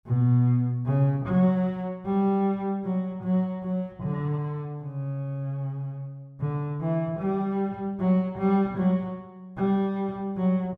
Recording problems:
none

